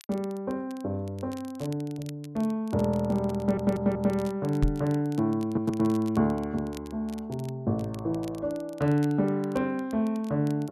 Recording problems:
crackling; vinyl, SNR 24 dB
stutter; at 3.5 s and at 5.5 s
microphone bump; at 4.5 s; peak +5 dB vs average level

